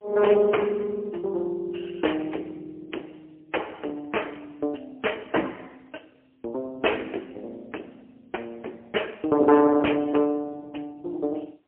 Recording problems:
telephone audio; 260 Hz to 3.1 kHz, AMR-NB, then MP3
distorted audio; soft clipping, signal-to-distortion ratio 11 dB

